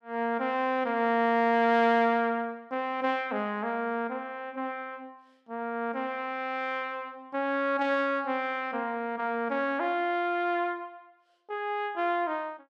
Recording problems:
none

